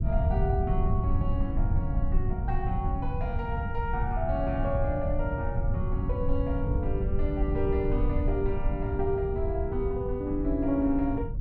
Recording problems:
low-frequency rumble; below 100 Hz, SNR -1 dB

